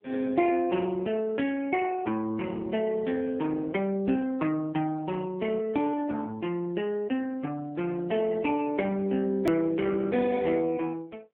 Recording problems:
phone line; 170 Hz to 3.3 kHz, AMR-NB
edit click; at 9.5 s

